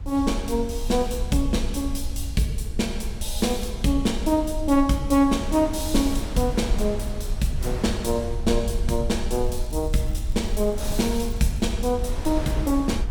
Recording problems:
rumble; below 62 Hz, SNR 7 dB
wind on the microphone; below 1.1 kHz, SNR 15 dB
crackle; from 9.5 to 12 s; loose cable, SNR 27 dB

